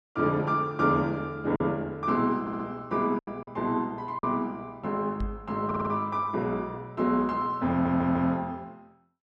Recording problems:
lost packets; 3% of the sound replaced, filled with silence
audio stuttering; at 2.5 s, at 5.5 s and at 7.5 s
microphone thump; at 5 s; peak -2 dB vs average level

